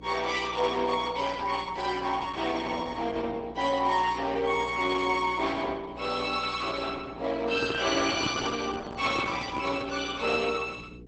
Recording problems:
lossy compression; Opus, log-spectral distance 5 dB, nothing above 8 kHz
hum; 60 Hz, harmonics up to 480 Hz, SNR 19 dB
handling noise; from 7.5 to 10 s; peak 0 dB vs average level

